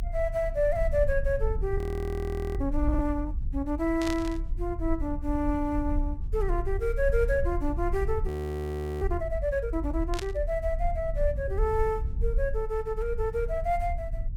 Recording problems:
low-frequency rumble; below 66 Hz, SNR 3 dB
frozen audio; at 2 s for 1 s and at 8.5 s for 0.5 s
burst of static; at 4 s and at 10 s; peak -1 dB vs average level

